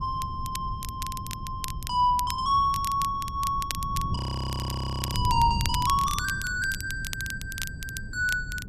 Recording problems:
wind on the microphone; below 140 Hz, SNR 7 dB
crackle; vinyl, SNR 10 dB
frozen audio; at 4 s for 1 s

